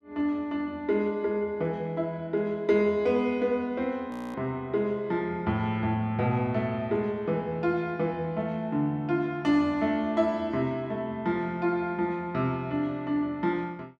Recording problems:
audio freezing; at 4 s

